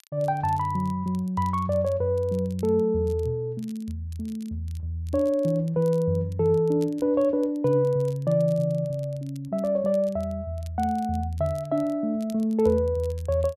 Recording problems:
crackle; vinyl, SNR 28 dB

